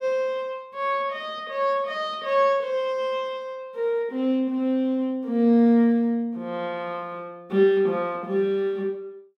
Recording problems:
none

